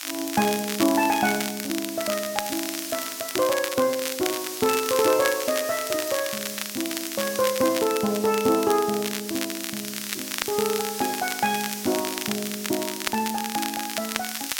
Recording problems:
background hiss; slope +4 dB per octave, SNR 8 dB
crackling; vinyl, SNR 6 dB

